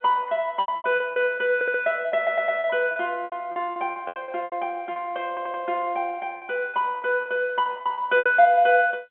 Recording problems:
telephone audio; 280 Hz to 3.4 kHz, G.711
lost packets; 14% of the sound replaced, filled with repeated pitch periods
audio stuttering; at 1.5 s, at 2 s and at 5.5 s

